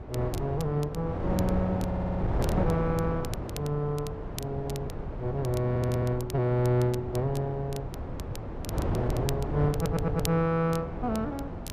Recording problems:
wind on the microphone; below 440 Hz, SNR 4 dB
crackle; vinyl, SNR 16 dB
stutter; at 2 s, at 5.5 s and at 9.5 s

